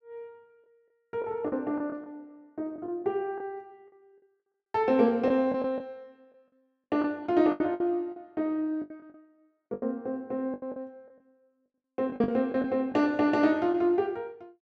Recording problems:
packet loss; 10% of the sound replaced, filled with the last packet

